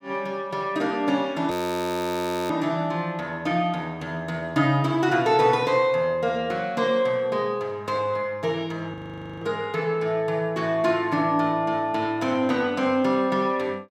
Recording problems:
audio freezing; at 1.5 s for 1 s and at 9 s

